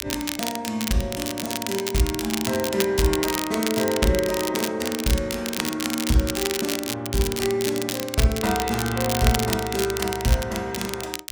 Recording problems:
crackle; vinyl, SNR 4 dB

